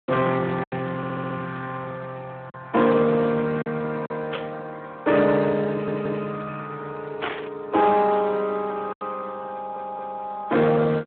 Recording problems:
phone line; 170 Hz to 3.6 kHz, Speex
distorted audio; soft clipping, signal-to-distortion ratio 11 dB
packet loss; 3% of the sound replaced, filled with silence
audio stuttering; at 1 s, at 5.5 s and at 9.5 s
burst of static; at 4.5 s and at 7 s; peak 0 dB vs average level

